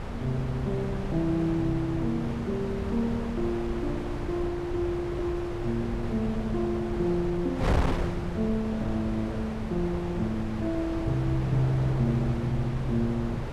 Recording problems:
hum; 60 Hz, harmonics up to 2.8 kHz, SNR 30 dB
wind on the microphone; below 480 Hz, SNR 5 dB

